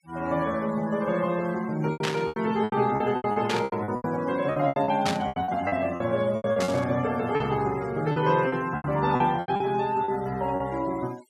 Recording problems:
denoising artefacts; signal-to-artefact ratio 20 dB
packet loss; 14% of the sound replaced, filled with repeated pitch periods
static burst; 4 times, first at 2 s; peak +1 dB vs average level

